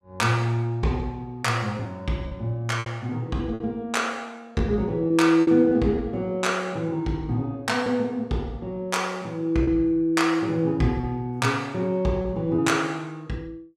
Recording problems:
lost packets; 4% of the sound replaced, filled with repeated pitch periods

